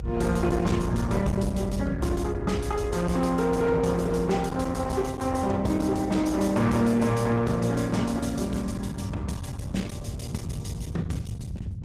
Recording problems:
codec artefacts; Opus, log-spectral distance 3 dB, nothing above 14.7 kHz
distorted audio; hard clipping, signal-to-distortion ratio 11 dB
rumble; below 150 Hz, SNR 6 dB

